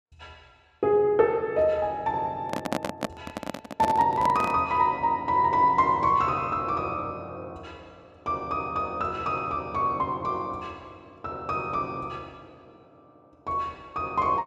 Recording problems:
microphone handling noise; from 2.5 to 4.5 s; peak +1 dB vs average level

